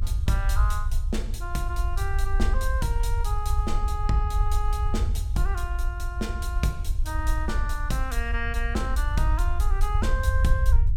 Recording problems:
low-frequency rumble; below 64 Hz, SNR -3 dB

